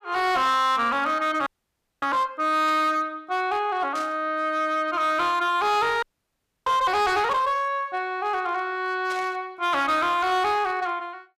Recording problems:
distortion; hard clipping, signal-to-distortion ratio 11 dB
frozen audio; at 1.5 s for 0.5 s and at 6 s for 0.5 s
static burst; 4 times, first at 2.5 s; peak -10 dB vs average level

